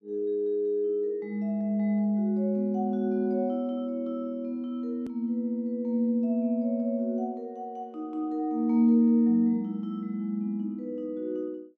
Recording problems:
edit click; at 5 s

